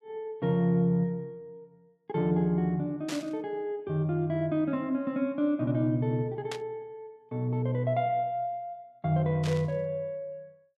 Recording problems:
static burst; at 3 s, at 6.5 s and at 9.5 s; peak -4 dB vs average level

